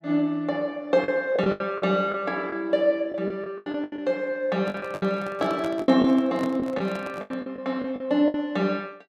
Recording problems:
packet loss; 11% of the sound replaced, filled with the last packet
handling noise; from 4.5 to 7.5 s; peak -6 dB vs average level

